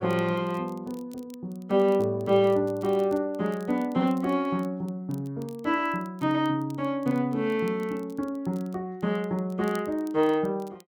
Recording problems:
crackle; vinyl, SNR 29 dB

